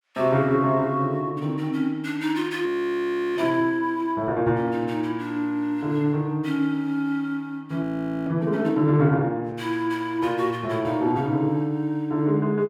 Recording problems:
frozen audio; at 2.5 s for 0.5 s and at 8 s

